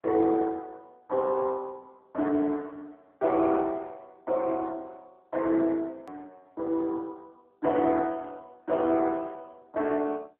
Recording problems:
phone line; 240 Hz to 3.7 kHz, AMR-NB
edit click; at 6 s

